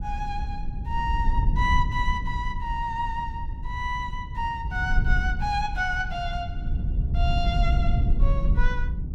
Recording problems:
low-frequency rumble; below 74 Hz, SNR -1 dB

